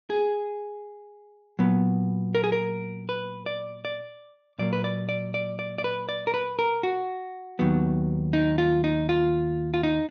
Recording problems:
low-pass filter; nothing above 6.5 kHz

